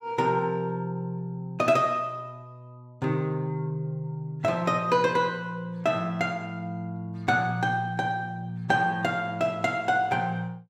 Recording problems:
none

